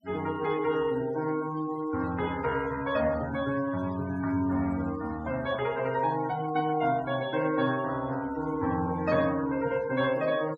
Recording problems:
denoising artefacts; signal-to-artefact ratio 16 dB

